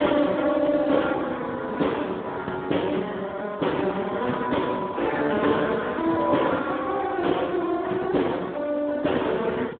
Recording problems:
phone line; 190 Hz to 3.6 kHz, Speex

